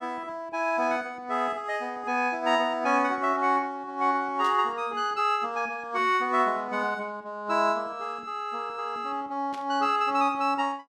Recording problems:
static burst; at 4.5 s and at 9.5 s; peak -12 dB vs average level

